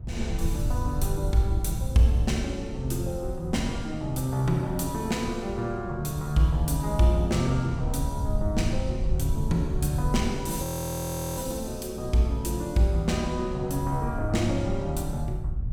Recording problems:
wind noise; below 92 Hz, SNR 6 dB
frozen audio; at 11 s for 0.5 s

